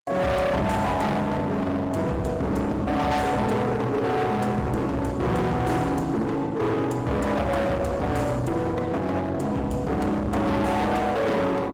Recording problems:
lossy codec; Opus, log-spectral distance 3 dB, nothing above 18 kHz
distorted audio; hard clipping, signal-to-distortion ratio 6 dB

